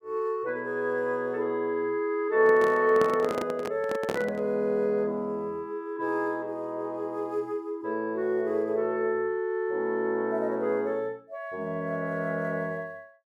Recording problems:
handling noise; from 2.5 to 4.5 s; peak 0 dB vs average level

